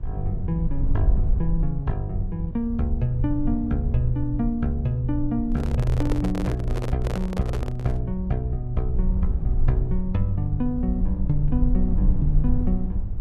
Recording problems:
rumble; below 62 Hz, SNR 2 dB
microphone handling noise; from 5.5 to 8 s; peak -1 dB vs average level

